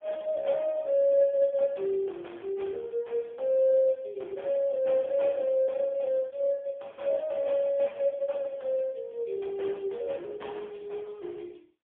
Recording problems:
telephone audio; 240 Hz to 3.4 kHz, AMR-NB, then MP3

